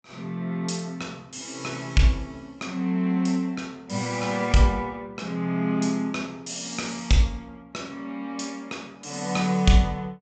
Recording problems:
treble cut off; nothing above 8 kHz

